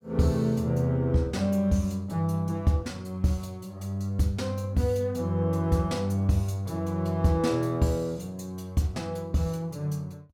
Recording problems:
none

